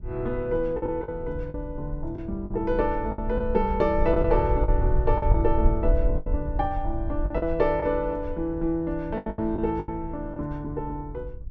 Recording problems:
low-frequency rumble; below 62 Hz, SNR 5 dB
lost packets; 8% of the sound replaced, filled with the last packet

